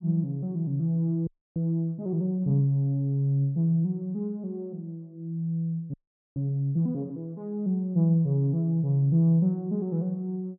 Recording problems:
frozen audio; at 1.5 s and at 6 s

